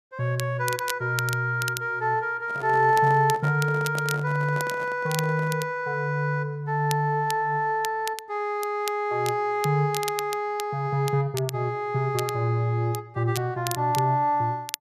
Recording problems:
crackling; vinyl, SNR 13 dB
handling noise; from 2.5 to 5.5 s; peak -8 dB vs average level

